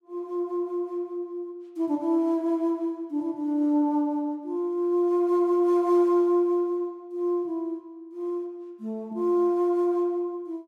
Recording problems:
none

